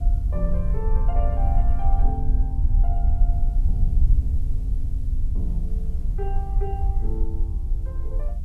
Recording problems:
hiss; slope +1 dB per octave, SNR 27 dB
rumble; below 58 Hz, SNR -12 dB
wind noise; below 310 Hz, SNR 17 dB

